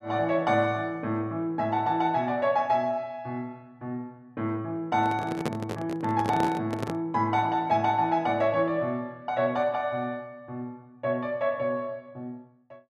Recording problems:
handling noise; from 5 to 7 s; peak +1 dB vs average level

